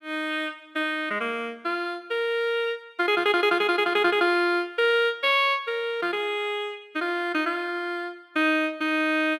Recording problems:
none

